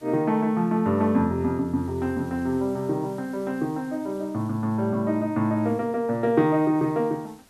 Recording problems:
hiss; slope -2 dB per octave, SNR 29 dB

